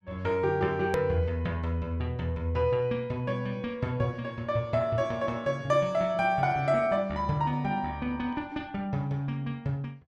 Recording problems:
hard cut with a click; at 1 s

